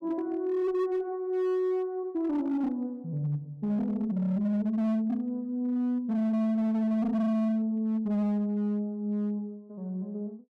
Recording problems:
distortion; hard clipping, signal-to-distortion ratio 11 dB

